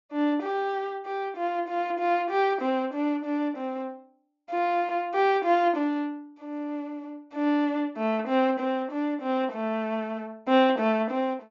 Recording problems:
low-pass filter; nothing above 7.2 kHz

